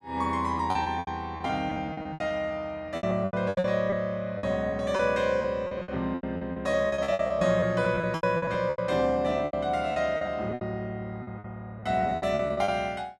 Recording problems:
packet loss; 18% of the sound replaced, filled with repeated pitch periods

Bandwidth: 12.5 kHz